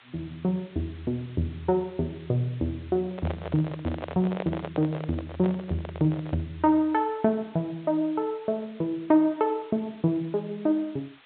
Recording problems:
treble missing; nothing above 4 kHz
hiss; SNR 26 dB
microphone handling noise; from 3 to 6.5 s; peak -1 dB vs average level

